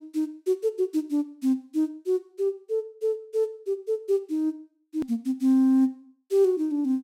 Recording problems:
click at an edit; at 5 s

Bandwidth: 16 kHz